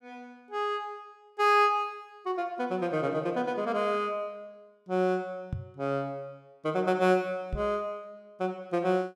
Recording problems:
microphone bump; at 5.5 s and at 7.5 s; peak -1 dB vs average level

